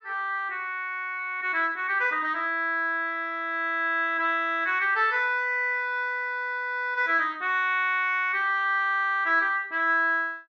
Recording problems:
treble missing; nothing above 7.5 kHz

